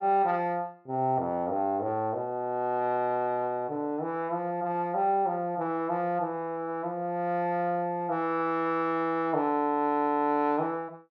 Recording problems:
none

